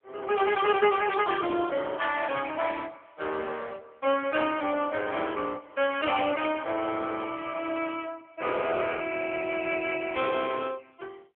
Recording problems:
phone line; 260 Hz to 3.4 kHz, AMR-NB

